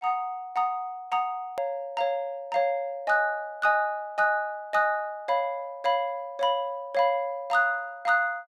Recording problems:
edit click; at 1.5 s

